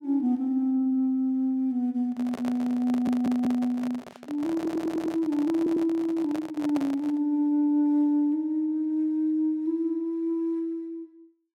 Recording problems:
handling noise; from 2 to 7 s; peak -6 dB vs average level
stutter; at 3 s, at 4.5 s and at 5.5 s

